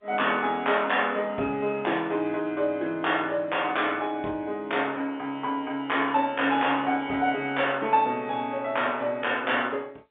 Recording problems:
phone line; 190 Hz to 3.6 kHz, G.711

